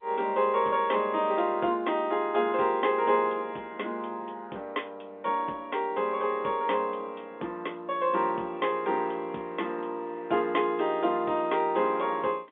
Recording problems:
telephone audio; 220 Hz to 3.6 kHz, G.711

